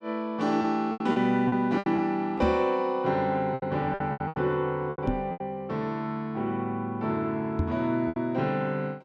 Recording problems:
lost packets; 9% of the sound replaced, filled with repeated pitch periods
knock on the microphone; at 2.5 s, at 5 s and at 7.5 s; peak +5 dB vs average level

